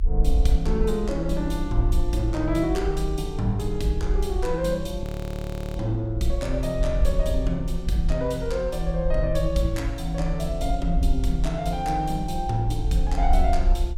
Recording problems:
rumble; below 52 Hz, SNR 2 dB
audio freezing; at 5 s for 0.5 s

